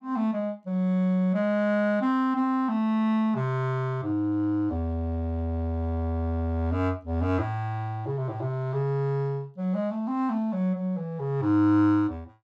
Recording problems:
none

